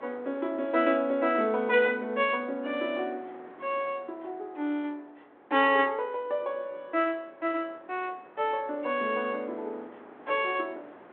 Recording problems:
phone line; 220 Hz to 3.5 kHz, G.726
wind noise; below 1.2 kHz, SNR 22 dB

